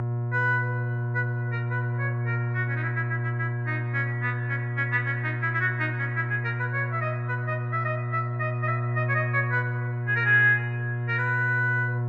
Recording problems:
hum; 60 Hz, harmonics up to 1.1 kHz, SNR 2 dB

